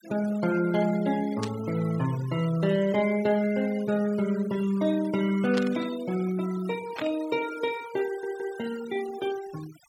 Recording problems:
denoising artefacts; signal-to-artefact ratio 17 dB
static burst; at 1.5 s, at 5.5 s and at 7 s; peak -3 dB vs average level
stutter; at 8 s

